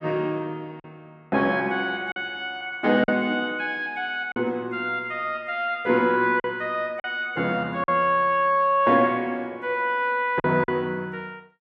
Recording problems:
lost packets; 3% of the sound replaced, filled with silence

